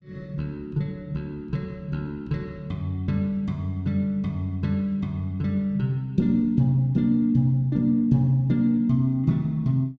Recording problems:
none

